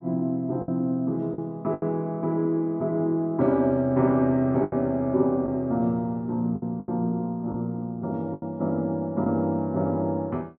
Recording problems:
lost packets; 5% of the sound replaced, filled with the last packet

